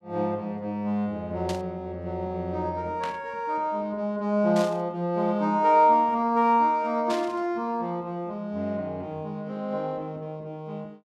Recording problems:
burst of static; 4 times, first at 1.5 s; peak -6 dB vs average level

